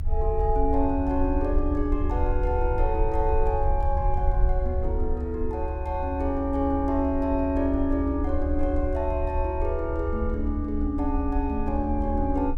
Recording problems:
low-frequency rumble; below 72 Hz, SNR 2 dB

